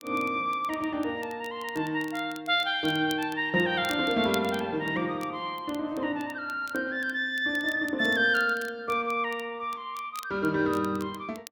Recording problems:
crackle; vinyl, SNR 21 dB

